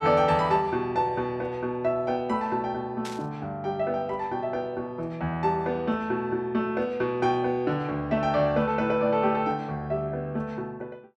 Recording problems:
burst of static; at 3 s; peak -8 dB vs average level

